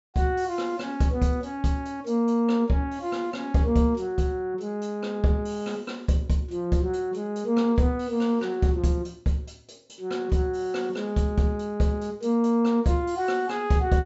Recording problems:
treble cut off; nothing above 8 kHz

